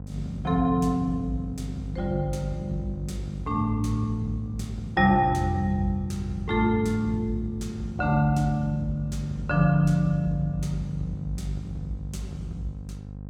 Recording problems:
hum; 50 Hz, harmonics up to 550 Hz, SNR 12 dB

